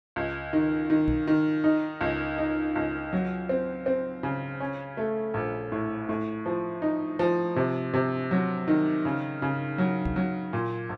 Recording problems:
knock on the microphone; at 1 s and at 10 s; peak 0 dB vs average level

